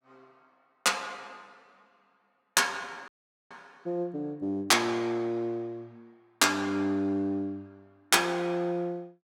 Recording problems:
audio cutting out; at 3 s

